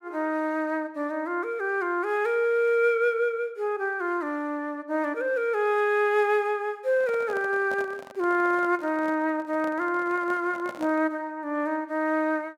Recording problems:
handling noise; from 7 to 11 s; peak -8 dB vs average level

